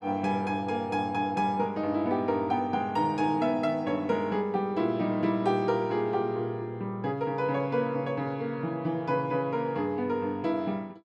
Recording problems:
none

